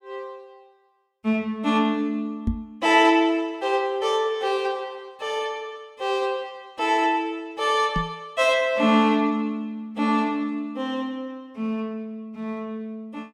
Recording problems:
microphone bump; at 2.5 s and at 8 s; peak +3 dB vs average level

